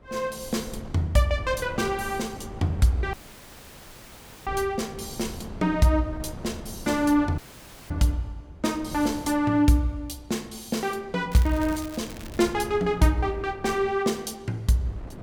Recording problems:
wind on the microphone; below 320 Hz, SNR 16 dB
dropout; at 3 s for 1.5 s and at 7.5 s for 0.5 s
crackle; from 11 to 12 s; loose cable, SNR 18 dB

